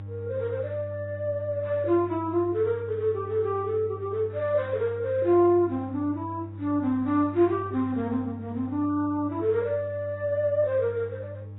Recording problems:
lossy compression; Vorbis, then AAC, log-spectral distance 2 dB
electrical hum; 50 Hz, harmonics up to 500 Hz, SNR 13 dB

